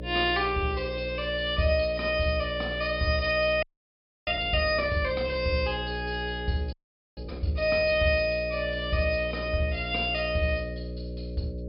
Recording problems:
treble cut off; nothing above 5.5 kHz
hum; 60 Hz, harmonics up to 600 Hz, SNR 10 dB
audio freezing; at 3.5 s for 0.5 s and at 6.5 s

